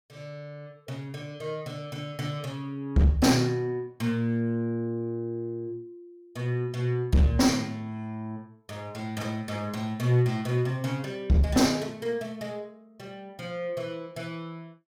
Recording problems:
distorted audio; hard clipping, uneven, signal-to-distortion ratio 9 dB

